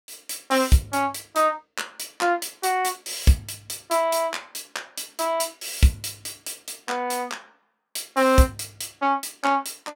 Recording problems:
none

